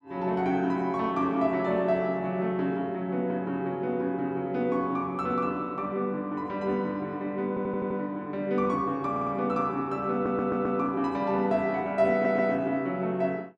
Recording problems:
audio stuttering; 4 times, first at 7.5 s

